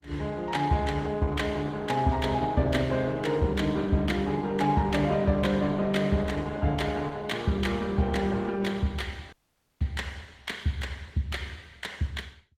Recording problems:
lossy compression; Opus, log-spectral distance 3 dB, nothing above 18.3 kHz
dropout; at 9.5 s

